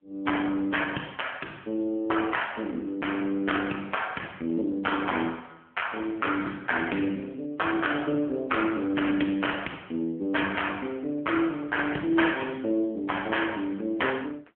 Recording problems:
phone line; 170 Hz to 3.3 kHz, AMR-NB

